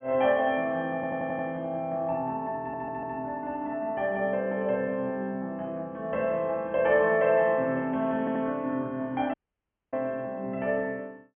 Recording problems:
treble cut off; nothing above 3.3 kHz
audio stuttering; at 1 s, at 2.5 s and at 8 s
audio cutting out; at 9.5 s for 0.5 s

